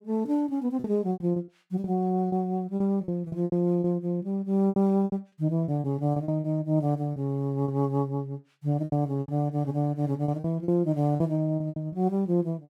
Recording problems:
lost packets; 12% of the sound replaced, filled with repeated pitch periods

